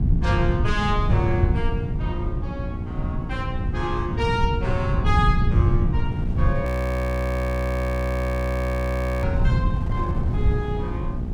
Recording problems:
hum; 60 Hz, harmonics up to 840 Hz, SNR 7 dB
rumble; below 130 Hz, SNR -3 dB
wind noise; below 390 Hz, SNR 12 dB
audio freezing; at 6.5 s for 2.5 s

